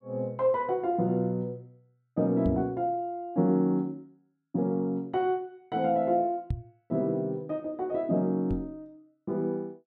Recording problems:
microphone bump; at 2.5 s, at 6.5 s and at 8.5 s; peak +2 dB vs average level

